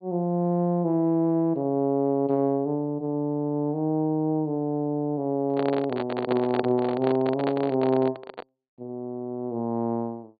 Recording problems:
treble cut off; nothing above 4.6 kHz
handling noise; from 5.5 to 8.5 s; peak +2 dB vs average level

